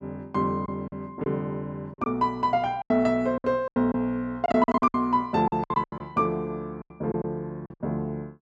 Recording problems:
packet loss; 12% of the sound replaced, filled with silence

